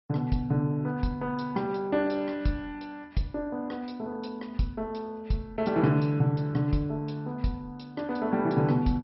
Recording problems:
codec artefacts; MP2, log-spectral distance 2 dB, nothing above 5.5 kHz

